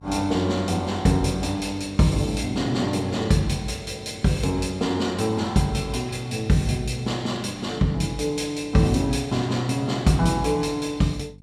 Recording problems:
hum; 50 Hz, harmonics up to 500 Hz, SNR 23 dB

